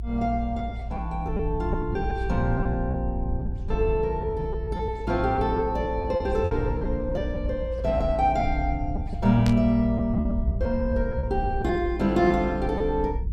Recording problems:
low-frequency rumble; below 76 Hz, strongest tone 56 Hz, SNR 6 dB
packet loss; 8% of the sound replaced, filled with repeated pitch periods
burst of static; at 9.5 s; peak -4 dB vs average level

